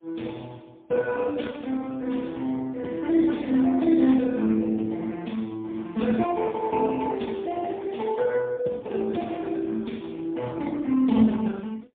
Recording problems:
phone line; 130 Hz to 3.6 kHz, AMR-NB, then MP3

